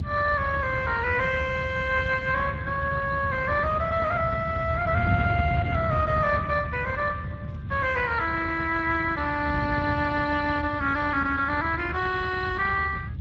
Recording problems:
lossy compression; Speex, log-spectral distance 4 dB, nothing above 7.6 kHz
rumble; below 160 Hz, SNR 9 dB
wind on the microphone; below 170 Hz, SNR 9 dB

